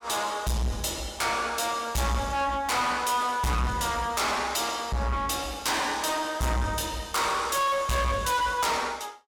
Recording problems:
distorted audio; soft clipping, signal-to-distortion ratio 7 dB

